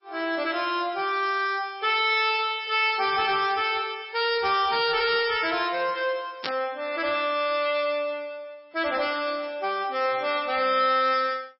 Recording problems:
codec artefacts; MP3, log-spectral distance 4 dB, nothing above 5.3 kHz
distortion; soft clipping, signal-to-distortion ratio 11 dB
burst of static; at 6.5 s; peak -1 dB vs average level

